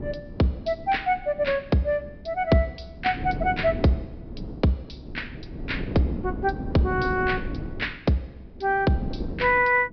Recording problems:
low-pass filter; nothing above 5.5 kHz
wind noise; below 290 Hz, SNR 10 dB

